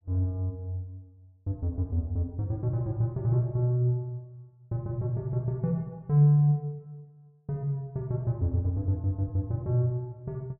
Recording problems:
none

